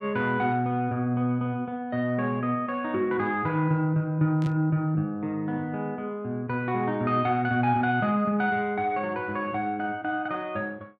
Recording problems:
static burst; at 4.5 s; peak -15 dB vs average level

